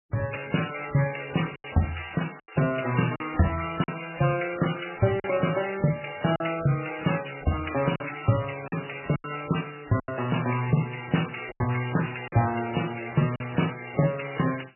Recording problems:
lossy codec; MP3, then MP3, log-spectral distance 11 dB, nothing above 2.9 kHz
lost packets; 5% of the sound replaced, filled with silence

